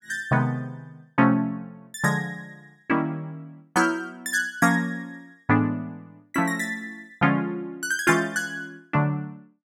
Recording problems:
none

